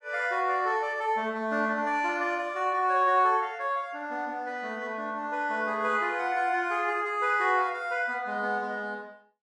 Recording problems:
none

